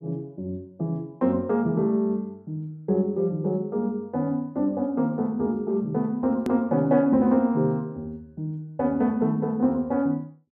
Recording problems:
click at an edit; at 6.5 s

